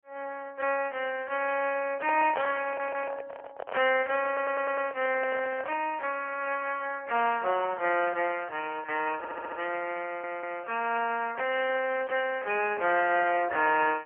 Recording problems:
phone line; 320 Hz to 3.1 kHz, AMR-NB
microphone handling noise; from 2 to 6 s; peak -2 dB vs average level
stutter; 4 times, first at 2.5 s

